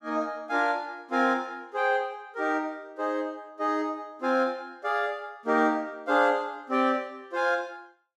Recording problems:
none

